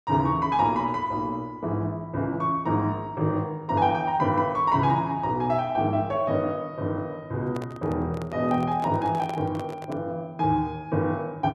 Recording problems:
handling noise; from 7.5 to 10 s; peak -7 dB vs average level

